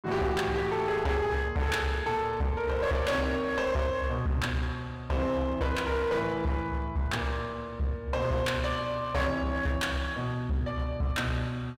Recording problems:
distortion; hard clipping, uneven, signal-to-distortion ratio 7 dB

